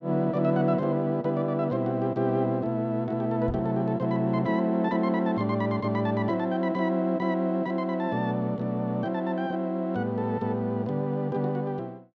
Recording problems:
knock on the microphone; at 3.5 s; peak -5 dB vs average level

